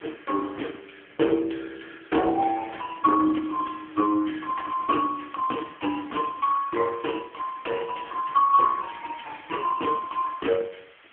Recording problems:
phone line; 260 Hz to 3.3 kHz, AMR-NB
background hiss; SNR 27 dB

